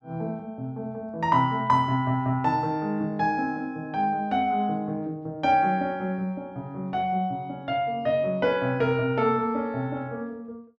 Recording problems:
none

